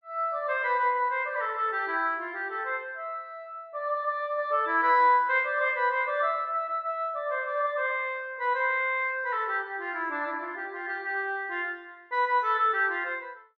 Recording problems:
none

